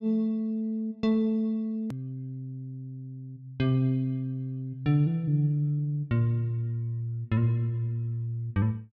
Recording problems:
click at an edit; at 2 s

